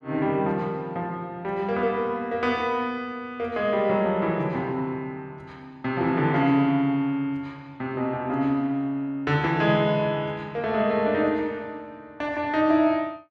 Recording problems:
none

